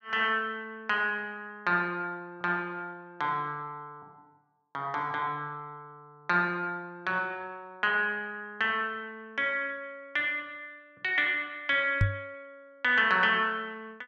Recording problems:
microphone thump; at 12 s; peak +7 dB vs average level

